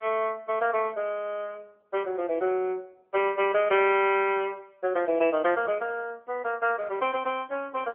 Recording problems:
phone line; 280 Hz to 3.3 kHz, AMR-NB

